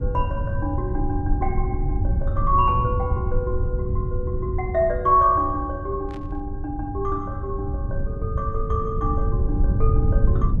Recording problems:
rumble; below 100 Hz, SNR 1 dB
static burst; at 6 s; peak -16 dB vs average level

